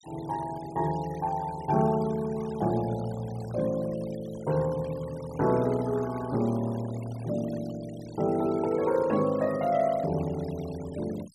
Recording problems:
denoising artefacts; signal-to-artefact ratio 19 dB

